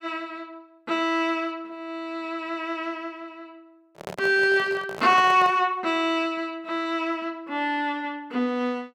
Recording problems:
handling noise; from 4 to 5.5 s; peak -6 dB vs average level

